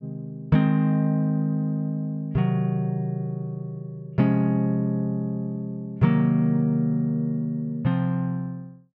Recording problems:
none

